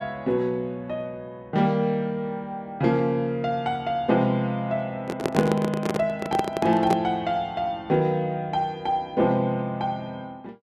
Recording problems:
microphone handling noise; from 5 to 7 s; peak +4 dB vs average level

